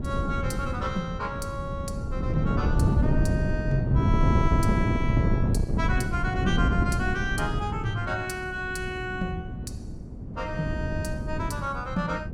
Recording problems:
mains hum; 60 Hz, harmonics up to 420 Hz, SNR 15 dB
wind on the microphone; below 200 Hz, SNR -3 dB

